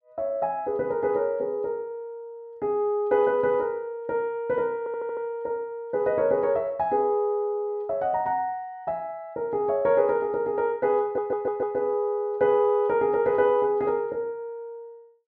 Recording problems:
stutter; at 5 s and at 11 s

